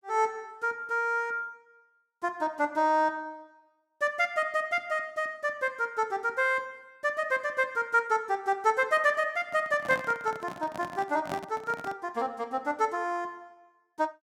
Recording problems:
handling noise; from 9.5 to 12 s; peak -3 dB vs average level

